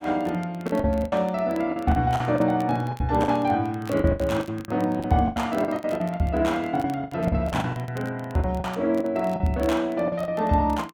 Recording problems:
crackle; vinyl, SNR 25 dB
packet loss; 15% of the sound replaced, filled with the last packet

